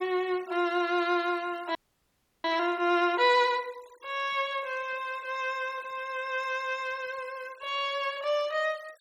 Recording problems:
denoising artefacts; signal-to-artefact ratio 23 dB
frozen audio; at 2 s for 0.5 s

